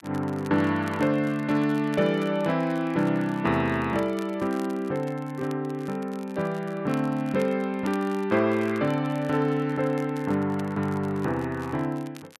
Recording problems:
crackling; vinyl, SNR 24 dB

